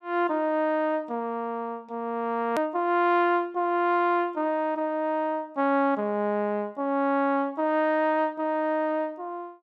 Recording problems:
click at an edit; at 2.5 s

